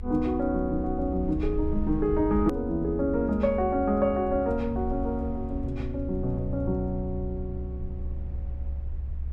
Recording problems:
rumble; below 70 Hz, SNR 8 dB
click at an edit; at 2.5 s

